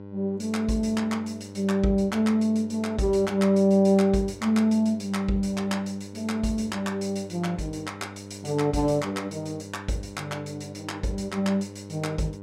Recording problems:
hum; 50 Hz, harmonics up to 1.1 kHz, SNR 15 dB

